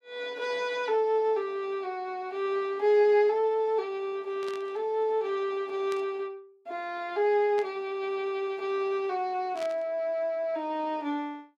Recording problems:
static burst; 4 times, first at 4.5 s; peak -10 dB vs average level

